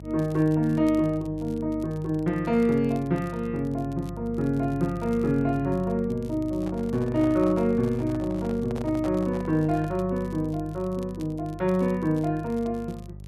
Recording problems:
electrical hum; 50 Hz, harmonics up to 550 Hz, SNR 14 dB
crackle; vinyl, SNR 29 dB
microphone handling noise; from 6.5 to 10 s; peak -8 dB vs average level

